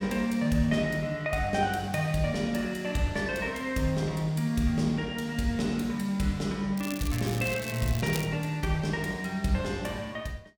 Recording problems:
crackling; from 7 to 8.5 s; loose cable, SNR 12 dB

